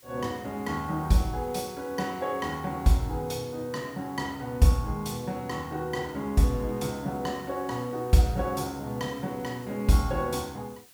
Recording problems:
hiss; slope +1 dB per octave, SNR 23 dB

